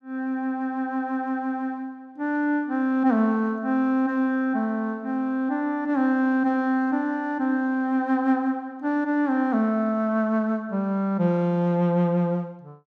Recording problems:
none

